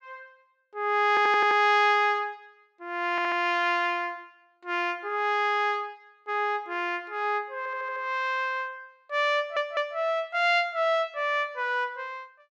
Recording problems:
audio stuttering; 4 times, first at 1 s

